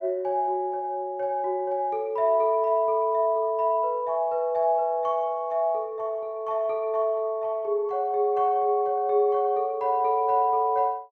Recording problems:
none

